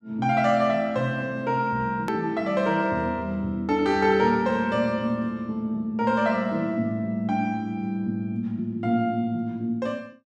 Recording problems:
hard cut with a click; at 2 s

